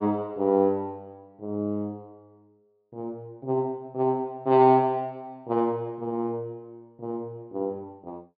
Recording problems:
low-pass filter; nothing above 5.5 kHz

